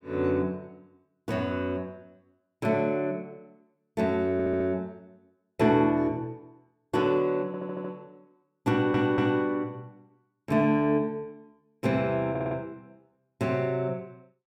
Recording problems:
audio stuttering; 4 times, first at 4.5 s

